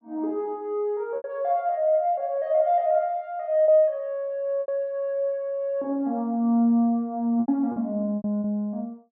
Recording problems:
lost packets; 5% of the sound replaced, filled with repeated pitch periods

